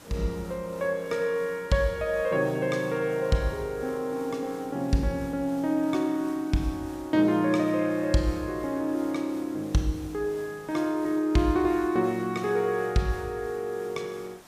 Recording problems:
hiss; slope -4 dB per octave, SNR 21 dB

